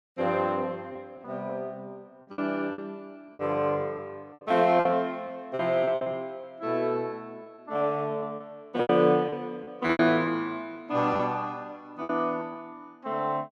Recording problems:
packet loss; 8% of the sound replaced, filled with repeated pitch periods

